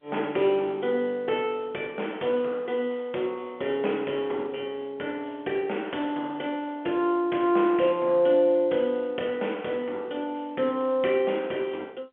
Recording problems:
phone line; 220 Hz to 3.3 kHz, G.711

